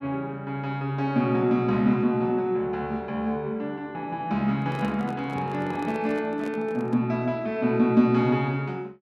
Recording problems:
handling noise; from 4.5 to 7 s; peak -9 dB vs average level

